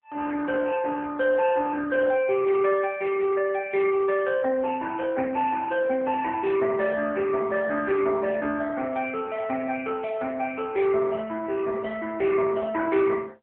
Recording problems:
phone line; 240 Hz to 2.6 kHz, AMR-NB

